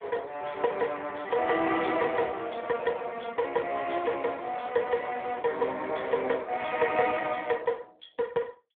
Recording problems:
phone line; 320 Hz to 3.4 kHz, Speex

